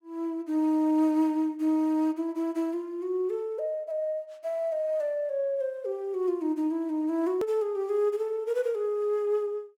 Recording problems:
edit click; at 7.5 s

